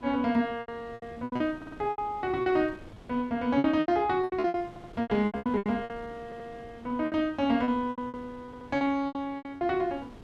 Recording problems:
wind on the microphone; below 590 Hz, SNR 21 dB
lost packets; 18% of the sound replaced, filled with repeated pitch periods
stutter; 4 times, first at 1.5 s

